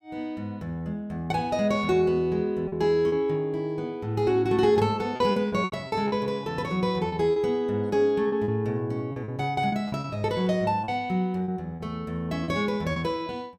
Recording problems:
packet loss; 7% of the sound replaced, filled with repeated pitch periods

